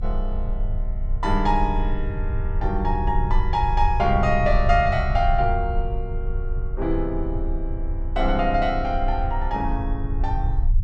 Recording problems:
rumble; below 64 Hz, strongest tone 28 Hz, SNR 3 dB

